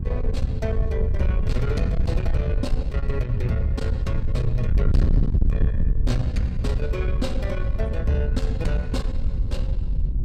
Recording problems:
distortion; soft clipping, signal-to-distortion ratio 7 dB
hum; 60 Hz, harmonics up to 840 Hz, SNR 18 dB
wind noise; below 82 Hz, SNR -3 dB

